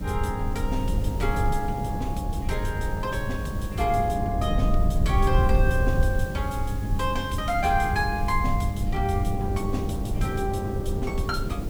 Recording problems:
mains hum; 50 Hz, harmonics up to 700 Hz, SNR 7 dB
hiss; slope 0 dB per octave, SNR 19 dB
low-frequency rumble; below 86 Hz, SNR 0 dB
wind on the microphone; below 390 Hz, SNR 8 dB

